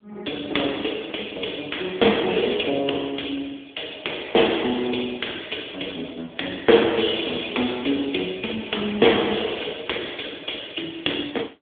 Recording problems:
telephone audio; 240 Hz to 3.6 kHz, AMR-NB

